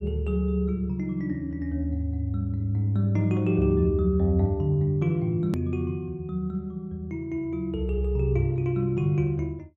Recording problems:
click at an edit; at 5.5 s

